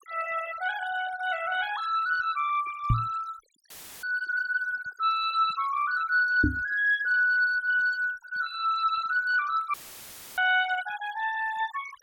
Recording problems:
noise reduction artefacts; signal-to-artefact ratio 17 dB
microphone bump; at 3 s and at 6.5 s; peak +6 dB vs average level
audio cutting out; at 3.5 s and at 9.5 s for 0.5 s; filled with static

